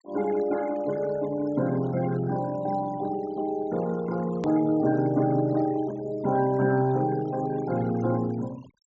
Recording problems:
treble missing; nothing above 8 kHz
noise reduction artefacts; signal-to-artefact ratio 20 dB
click at an edit; at 4.5 s

